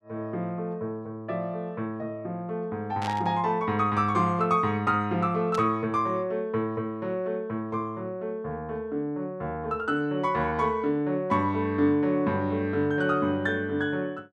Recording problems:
burst of static; at 3 s and at 5.5 s; peak -5 dB vs average level

